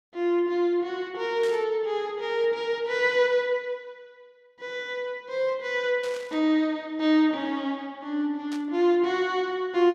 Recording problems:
burst of static; at 1.5 s, at 6 s and at 8.5 s; peak -12 dB vs average level

